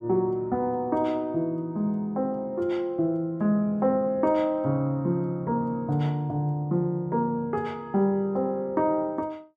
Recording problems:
none

